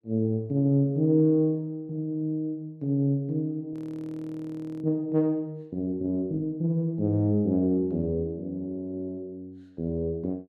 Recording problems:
frozen audio; at 3.5 s for 1 s

